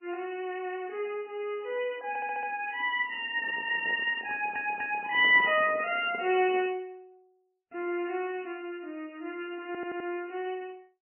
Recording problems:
lossy codec; MP3, log-spectral distance 3 dB, nothing above 2.6 kHz
stutter; at 2 s, at 4.5 s and at 9.5 s
handling noise; from 3.5 to 7 s; peak -9 dB vs average level

